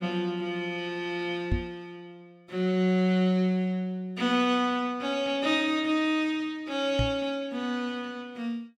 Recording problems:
microphone thump; at 1.5 s and at 7 s; peak +3 dB vs average level

